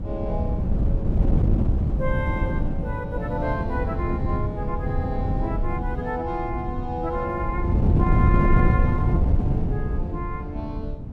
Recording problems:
wind noise; below 150 Hz, SNR -5 dB

